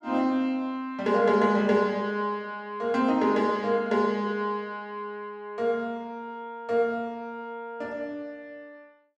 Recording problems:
none

